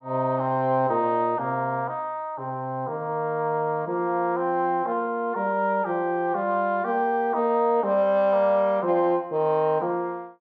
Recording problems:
none

